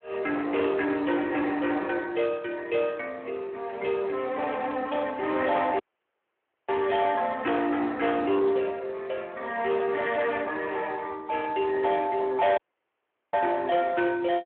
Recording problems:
phone line; 280 Hz to 3.2 kHz, Speex
distorted audio; hard clipping, uneven, signal-to-distortion ratio 12 dB
audio cutting out; at 6 s for 1 s and at 13 s for 1 s

